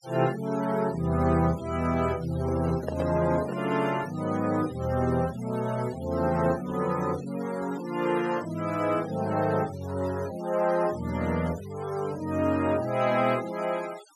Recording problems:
denoising artefacts; signal-to-artefact ratio 19 dB
microphone handling noise; from 2.5 to 4 s; peak -2 dB vs average level

